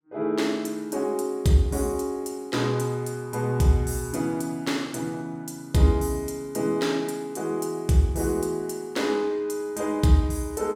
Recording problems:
none

